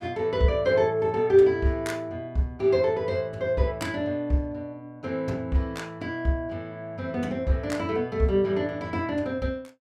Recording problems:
none

